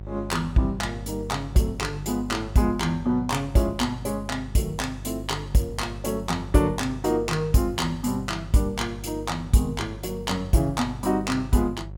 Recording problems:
electrical hum; 50 Hz, harmonics up to 550 Hz, SNR 13 dB

